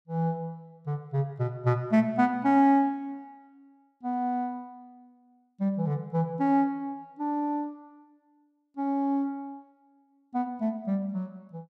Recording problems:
none

